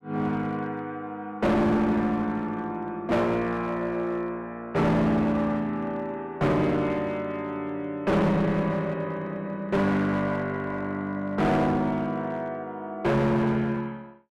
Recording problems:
distortion; hard clipping, uneven, signal-to-distortion ratio 7 dB

